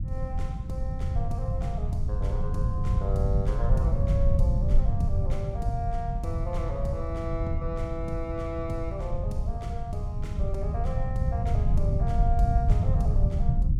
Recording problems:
low-frequency rumble; below 100 Hz, SNR -7 dB

